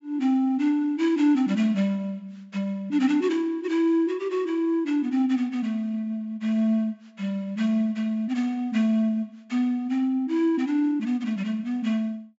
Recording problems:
low-pass filter; nothing above 8 kHz

